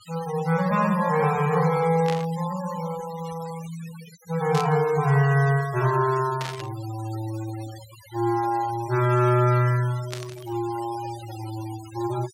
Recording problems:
denoising artefacts; signal-to-artefact ratio 18 dB
static burst; 4 times, first at 2 s; peak -5 dB vs average level

